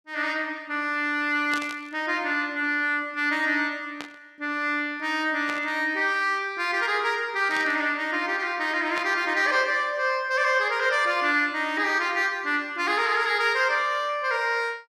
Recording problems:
burst of static; 5 times, first at 1.5 s; peak -6 dB vs average level

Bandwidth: 14.5 kHz